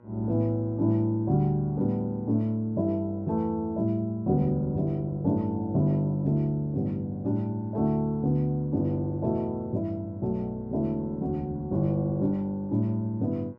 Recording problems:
hum; 60 Hz, harmonics up to 1.6 kHz, SNR 31 dB

